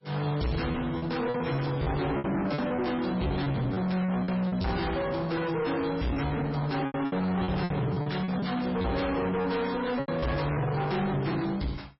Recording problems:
codec artefacts; MP3, log-spectral distance 5 dB, nothing above 5.5 kHz
distorted audio; soft clipping, signal-to-distortion ratio 6 dB
lost packets; 9% of the sound replaced, filled with repeated pitch periods

